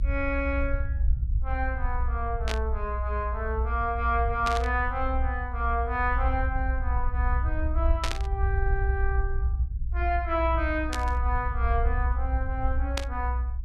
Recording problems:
low-frequency rumble; below 64 Hz, strongest tone 62 Hz, SNR -1 dB
burst of static; 5 times, first at 2.5 s; peak +4 dB vs average level

